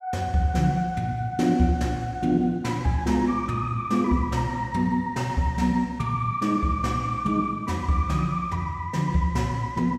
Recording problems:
none

